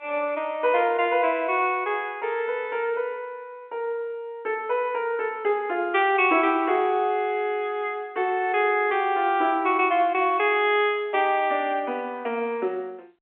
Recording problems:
phone line; 300 Hz to 3.3 kHz, G.711

